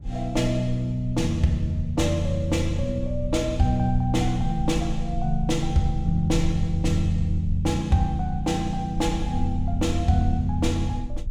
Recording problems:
low-frequency rumble; below 58 Hz, strongest tone 22 Hz, SNR 9 dB

